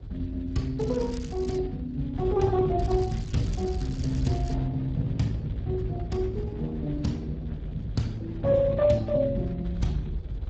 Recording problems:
codec artefacts; Speex, log-spectral distance 2 dB
low-frequency rumble; below 100 Hz, SNR 7 dB
wind on the microphone; below 470 Hz, SNR 19 dB
crackling; at 1 s and from 3 to 4.5 s; loose cable, SNR 19 dB

